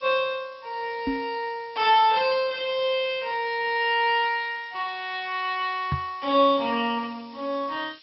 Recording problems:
low-pass filter; nothing above 4.9 kHz
lossy codec; Speex, log-spectral distance 9 dB
hiss; SNR 27 dB
microphone thump; at 1 s and at 6 s; peak +1 dB vs average level

